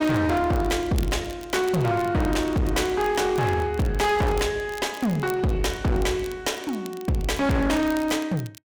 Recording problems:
distorted audio; hard clipping, uneven, signal-to-distortion ratio 7 dB
crackling; vinyl, SNR 20 dB

